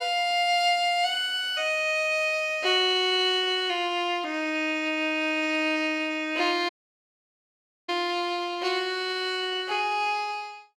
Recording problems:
audio cutting out; at 6.5 s for 1 s

